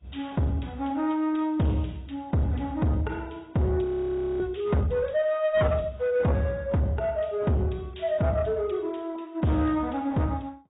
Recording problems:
low-pass filter; nothing above 3.8 kHz
lossy codec; AAC, log-spectral distance 3 dB
distorted audio; soft clipping, signal-to-distortion ratio 10 dB
frozen audio; at 4 s for 0.5 s

